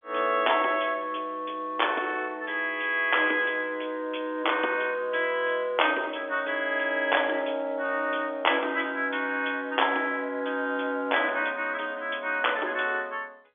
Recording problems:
phone line; 240 Hz to 3.5 kHz, G.711

